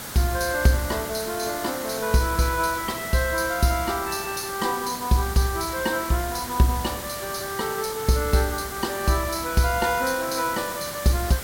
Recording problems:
background hiss; SNR 9 dB

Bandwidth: 16.5 kHz